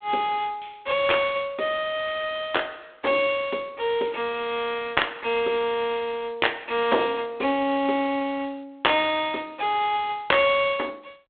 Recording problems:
phone line; 240 Hz to 3.7 kHz, G.726

